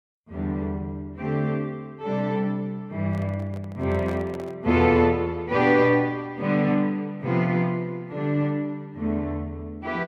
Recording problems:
microphone handling noise; from 3 to 4.5 s; peak -10 dB vs average level

